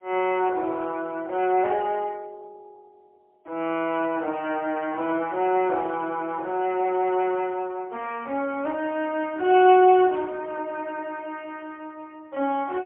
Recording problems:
telephone audio; 240 Hz to 3.3 kHz, AMR-NB, then MP3

